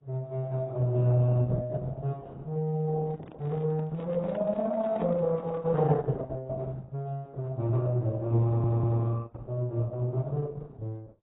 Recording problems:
lossy codec; Opus, then AAC, log-spectral distance 3 dB, nothing above 3.8 kHz
microphone handling noise; from 3 to 6 s; peak -5 dB vs average level
audio stuttering; at 8.5 s

